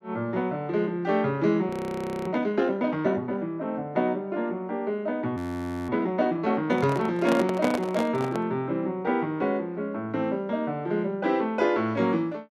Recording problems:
audio freezing; at 1.5 s for 0.5 s and at 5.5 s for 0.5 s
microphone handling noise; from 6.5 to 8.5 s; peak +2 dB vs average level

